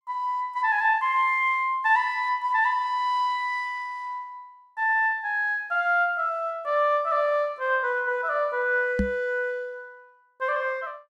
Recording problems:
microphone thump; at 9 s; peak +2 dB vs average level

